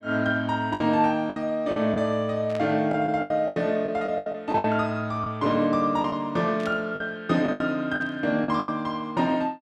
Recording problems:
lost packets; 10% of the sound replaced, filled with the last packet
static burst; at 2.5 s, at 6.5 s and at 8 s; peak -10 dB vs average level

